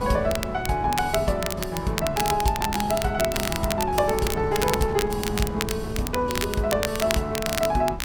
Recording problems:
wind noise; below 250 Hz, SNR 10 dB
crackling; vinyl, SNR 6 dB

